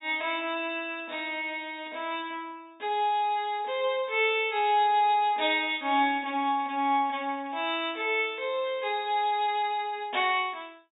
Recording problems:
treble cut off; nothing above 4 kHz

